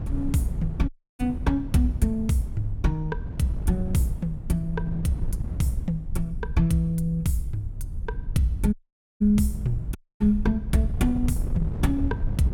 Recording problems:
low-frequency rumble; below 72 Hz, SNR 10 dB
wind on the microphone; below 140 Hz, SNR 9 dB
dropout; at 1 s, at 8.5 s and at 10 s

